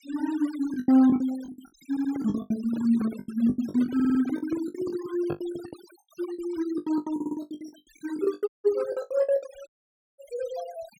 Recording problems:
denoising artefacts; signal-to-artefact ratio 19 dB
lost packets; 19% of the sound replaced, filled with the last packet
stutter; at 2 s, at 4 s and at 7 s
handling noise; from 2 to 6 s; peak -4 dB vs average level
dropout; at 8.5 s and at 9.5 s for 0.5 s

